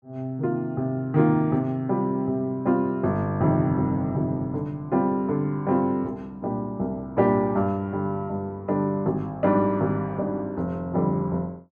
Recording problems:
none

